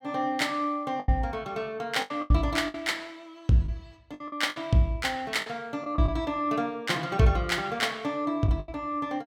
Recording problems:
lost packets; 8% of the sound replaced, filled with the last packet

